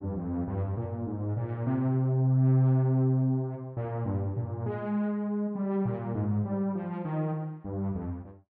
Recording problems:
none

